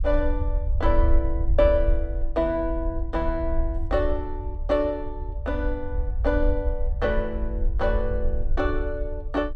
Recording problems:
rumble; below 60 Hz, SNR 1 dB

